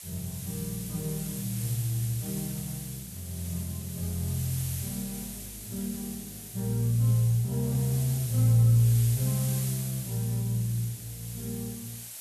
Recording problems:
hiss; SNR 9 dB

